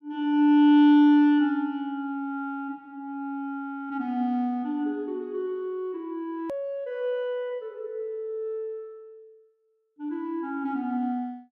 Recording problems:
edit click; at 6.5 s

